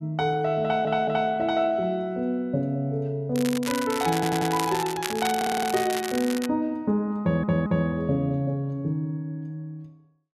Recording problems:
stutter; 4 times, first at 0.5 s
crackling; from 3.5 to 6.5 s; loose cable, SNR 8 dB

